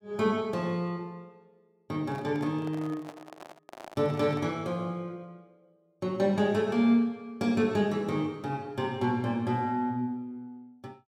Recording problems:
microphone handling noise; from 2 to 4.5 s; peak -11 dB vs average level

